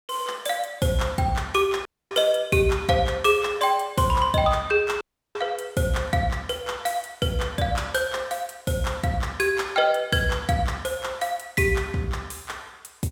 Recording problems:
dropout; at 2 s and at 5 s

